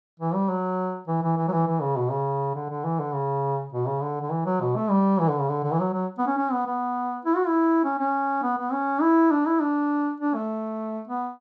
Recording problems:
none

